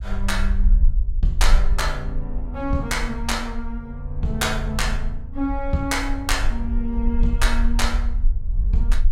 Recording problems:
rumble; below 46 Hz, SNR 0 dB

